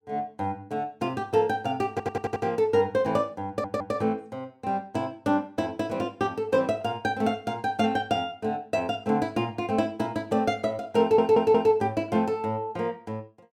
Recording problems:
audio stuttering; at 2 s, at 3.5 s and at 11 s

